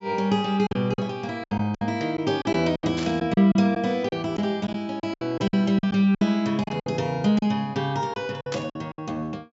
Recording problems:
low-pass filter; nothing above 8 kHz
lost packets; 12% of the sound replaced, filled with silence
burst of static; at 3 s and at 8.5 s; peak -5 dB vs average level

